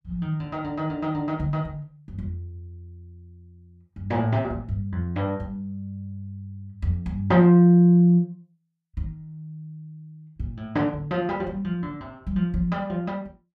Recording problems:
none

